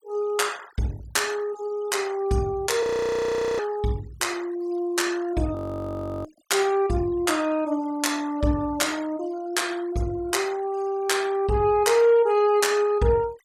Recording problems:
noise reduction artefacts; signal-to-artefact ratio 22 dB
frozen audio; at 3 s for 1 s and at 5.5 s for 0.5 s

